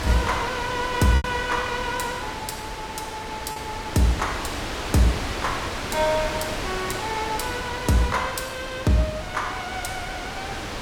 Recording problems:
wind noise; below 3 kHz, SNR 5 dB
lost packets; 1.2% of the sound replaced, filled with repeated pitch periods

